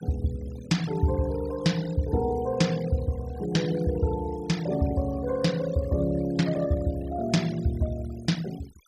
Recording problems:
noise reduction artefacts; signal-to-artefact ratio 18 dB

